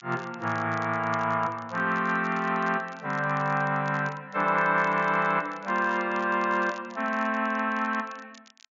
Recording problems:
treble missing; nothing above 7.2 kHz
crackle; vinyl, SNR 26 dB

